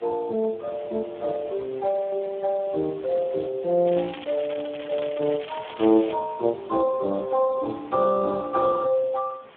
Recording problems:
telephone audio; 240 Hz to 2.2 kHz, Speex
background hiss; SNR 25 dB
crackling; from 4 to 6 s; loose cable, SNR 17 dB

